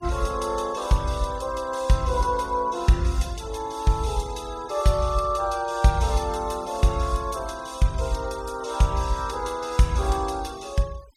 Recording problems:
noise reduction artefacts; signal-to-artefact ratio 21 dB

